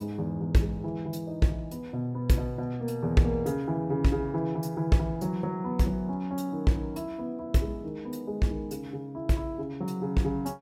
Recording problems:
none

